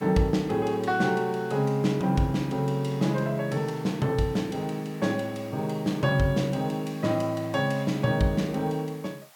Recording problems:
hiss; SNR 26 dB

